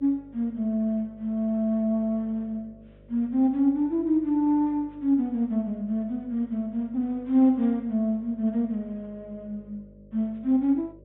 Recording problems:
low-pass filter; nothing above 3.8 kHz
electrical hum; 50 Hz, harmonics up to 600 Hz, SNR 27 dB

